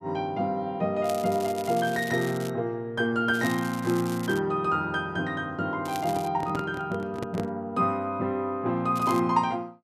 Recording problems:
crackling; 4 times, first at 1 s; loose cable, SNR 16 dB
microphone handling noise; from 6 to 7.5 s; peak -2 dB vs average level

